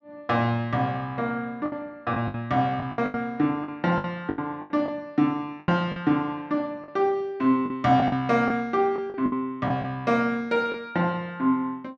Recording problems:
packet loss; 9% of the sound replaced, filled with the last packet

